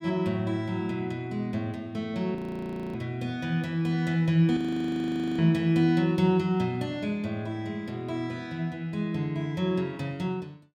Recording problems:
audio freezing; at 2.5 s for 0.5 s and at 4.5 s for 1 s

